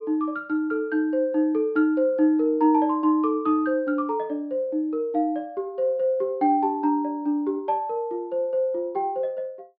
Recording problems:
treble missing; nothing above 5.5 kHz

